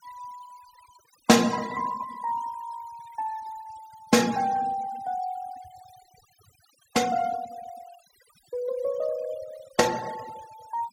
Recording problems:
noise reduction artefacts; signal-to-artefact ratio 17 dB

